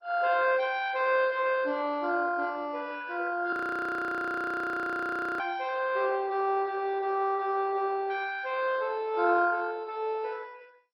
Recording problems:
lossy codec; MP2, log-spectral distance 4 dB, nothing above 16.1 kHz
audio freezing; at 3.5 s for 2 s

